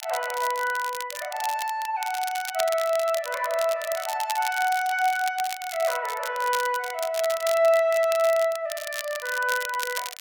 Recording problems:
crackling; vinyl, SNR 11 dB

